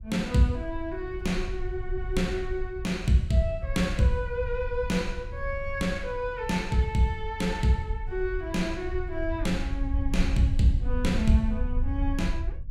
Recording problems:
low-frequency rumble; below 70 Hz, SNR 6 dB

